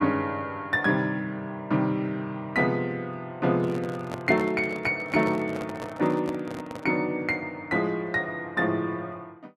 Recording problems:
microphone handling noise; from 3.5 to 7 s; peak -5 dB vs average level

